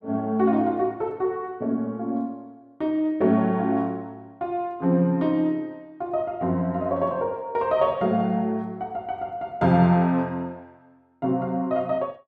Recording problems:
none

